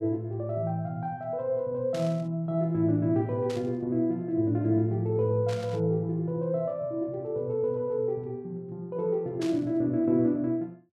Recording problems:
static burst; 4 times, first at 2 s; peak -9 dB vs average level

